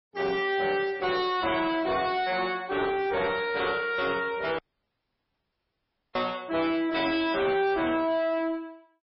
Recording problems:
lossy compression; MP3, log-spectral distance 3 dB, nothing above 4.9 kHz
distortion; soft clipping, signal-to-distortion ratio 10 dB
dropout; at 4.5 s for 1.5 s

